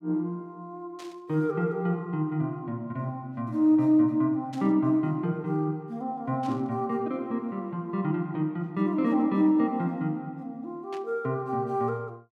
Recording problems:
burst of static; 4 times, first at 1 s; peak -14 dB vs average level

